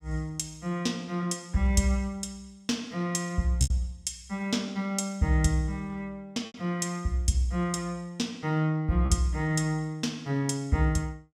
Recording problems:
lost packets; 1.8% of the sound replaced, filled with repeated pitch periods

